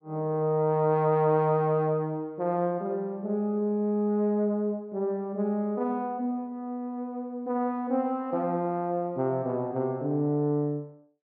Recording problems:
low-pass filter; nothing above 5.5 kHz

